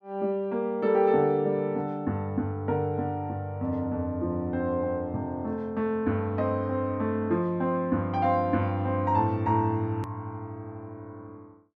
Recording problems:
click at an edit; at 10 s

